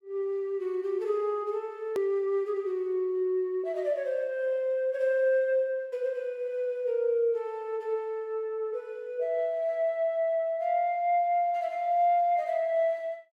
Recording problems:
hard cut with a click; at 2 s

